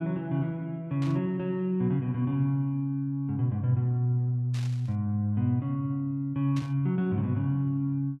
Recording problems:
burst of static; at 1 s, at 4.5 s and at 6.5 s; peak -11 dB vs average level

